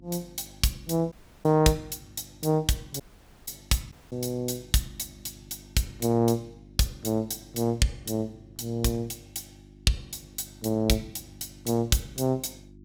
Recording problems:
electrical hum; 50 Hz, harmonics up to 350 Hz, SNR 23 dB
audio cutting out; at 1 s, at 3 s and at 4 s

